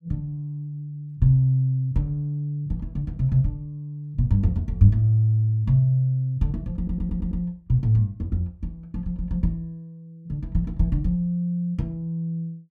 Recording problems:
audio stuttering; at 7 s

